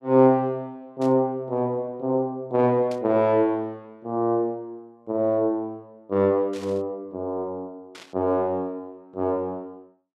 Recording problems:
static burst; 4 times, first at 1 s; peak -14 dB vs average level

